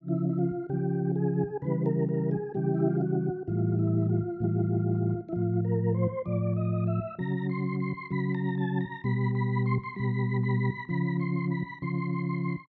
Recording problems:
none

